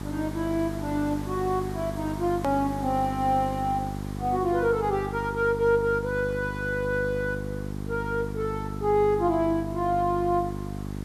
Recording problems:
hum; 50 Hz, harmonics up to 800 Hz, SNR 7 dB
hiss; SNR 20 dB
edit click; at 2.5 s

